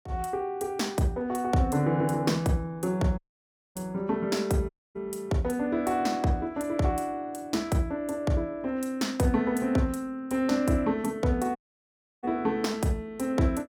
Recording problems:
audio cutting out; at 3 s for 0.5 s, at 4.5 s and at 12 s for 0.5 s

